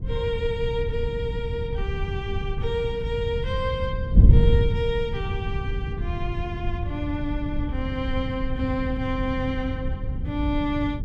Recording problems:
wind on the microphone; below 110 Hz, SNR -2 dB

